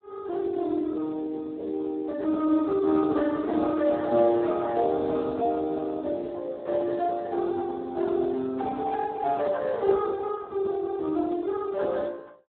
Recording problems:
telephone audio; 240 Hz to 2.1 kHz, Speex

